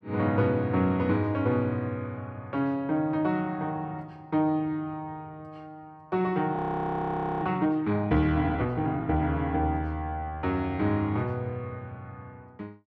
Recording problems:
frozen audio; at 6.5 s for 1 s

